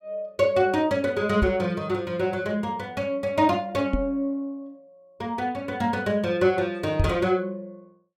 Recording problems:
knock on the microphone; at 1.5 s, at 4 s and at 7 s; peak +5 dB vs average level

